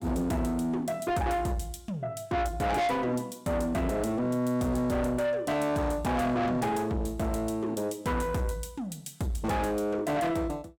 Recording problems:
distorted audio; soft clipping, signal-to-distortion ratio 7 dB

